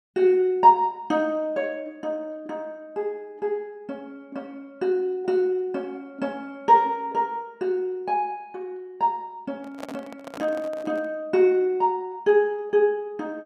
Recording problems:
handling noise; from 9.5 to 11 s; peak -8 dB vs average level

